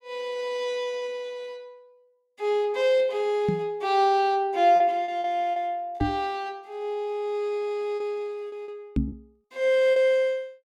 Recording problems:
packet loss; 4% of the sound replaced, filled with repeated pitch periods
microphone bump; at 3.5 s, at 6 s and at 9 s; peak +4 dB vs average level

